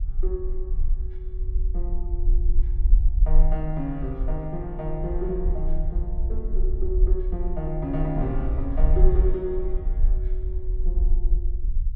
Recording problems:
rumble; below 46 Hz, strongest tone 24 Hz, SNR -5 dB

